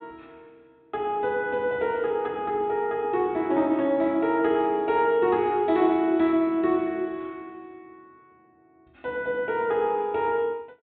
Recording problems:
treble cut off; nothing above 4 kHz

